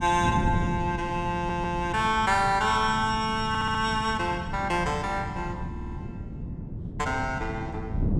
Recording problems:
wind noise; below 200 Hz, SNR 8 dB
stutter; at 1.5 s, at 3.5 s and at 5.5 s

